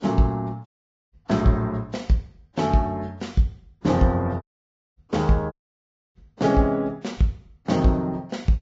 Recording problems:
codec artefacts; Vorbis, log-spectral distance 2 dB, nothing above 17.1 kHz
dropout; at 0.5 s, at 4.5 s for 0.5 s and at 5.5 s for 0.5 s

